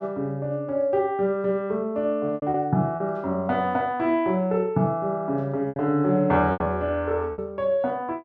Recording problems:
packet loss; 5% of the sound replaced, filled with repeated pitch periods

